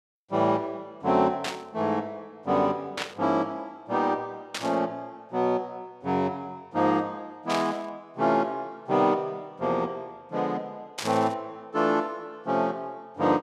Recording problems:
burst of static; 5 times, first at 1.5 s; peak +1 dB vs average level

